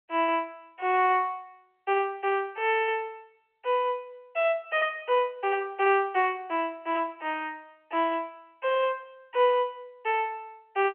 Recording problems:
telephone audio; 320 Hz to 3.3 kHz, G.711

